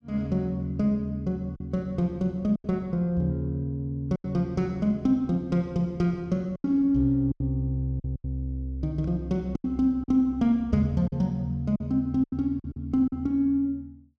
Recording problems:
lost packets; 6% of the sound replaced, filled with silence

